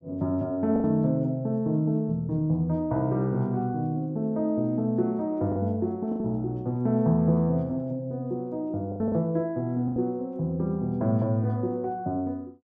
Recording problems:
lost packets; 3% of the sound replaced, filled with the last packet

